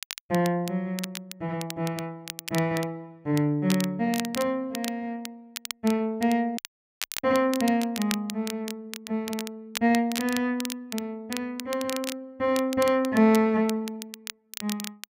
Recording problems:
crackling; vinyl, SNR 11 dB
audio cutting out; at 6.5 s for 0.5 s

